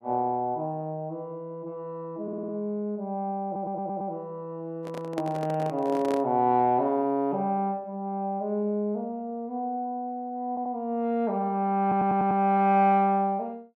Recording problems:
audio stuttering; 4 times, first at 2 s
handling noise; from 5 to 6 s; peak -3 dB vs average level

